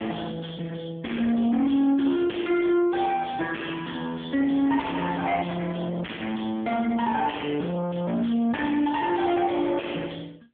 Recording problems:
telephone audio; 190 Hz to 2.8 kHz, AMR-NB
distorted audio; soft clipping, signal-to-distortion ratio 6 dB

